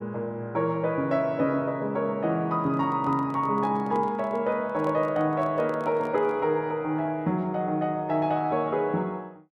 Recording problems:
handling noise; from 2.5 to 6.5 s; peak -11 dB vs average level

